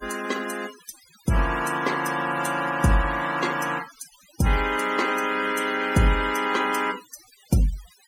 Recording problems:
noise reduction artefacts; signal-to-artefact ratio 14 dB

